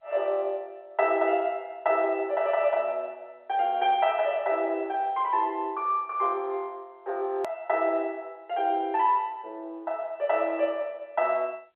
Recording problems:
telephone audio; 340 Hz to 3.6 kHz, G.711
edit click; at 7.5 s

